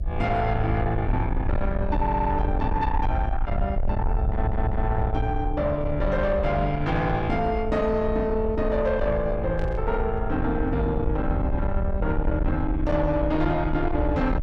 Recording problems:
distortion; soft clipping, signal-to-distortion ratio 10 dB
electrical hum; 60 Hz, harmonics up to 720 Hz, SNR 24 dB
low-frequency rumble; below 82 Hz, SNR 4 dB
audio stuttering; at 2 s and at 4.5 s
static burst; at 9.5 s; peak -16 dB vs average level

